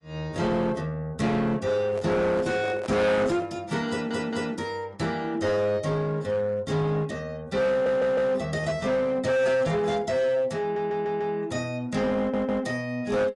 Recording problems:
codec artefacts; AAC, log-spectral distance 2 dB, nothing above 10.4 kHz
distortion; hard clipping, signal-to-distortion ratio 7 dB
handling noise; from 2 to 3.5 s; peak -6 dB vs average level
stutter; 4 times, first at 4 s

